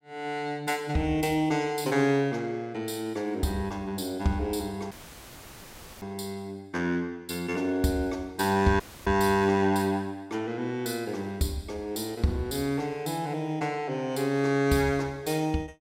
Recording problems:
dropout; at 5 s for 1 s and at 9 s; filled with static

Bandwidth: 16 kHz